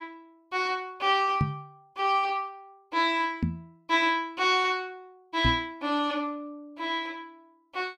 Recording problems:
microphone thump; at 1.5 s, at 3.5 s and at 5.5 s; peak +5 dB vs average level

